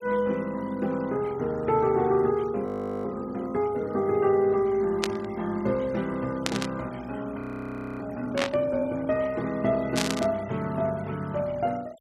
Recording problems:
noise reduction artefacts; signal-to-artefact ratio 24 dB
audio freezing; at 2.5 s and at 7.5 s for 0.5 s
burst of static; 4 times, first at 5 s; peak +4 dB vs average level

